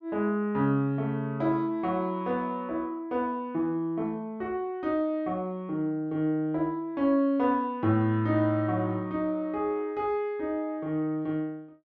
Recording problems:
none

